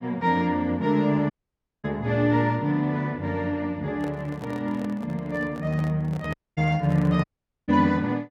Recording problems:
dropout; at 1.5 s for 0.5 s, at 6.5 s and at 7 s
handling noise; from 4 to 7 s; peak -10 dB vs average level

